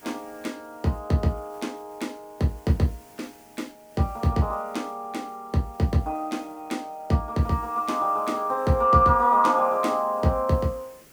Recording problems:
background hiss; SNR 28 dB

